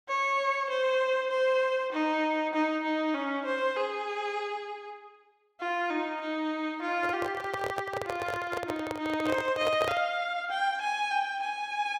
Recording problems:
handling noise; from 7 to 10 s; peak +1 dB vs average level

